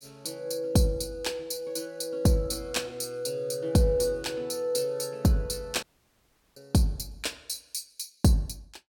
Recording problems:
dropout; at 6 s for 0.5 s

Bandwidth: 17.5 kHz